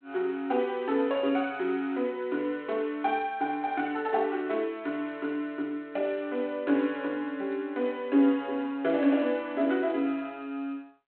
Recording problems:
phone line; 220 Hz to 3.6 kHz, G.726

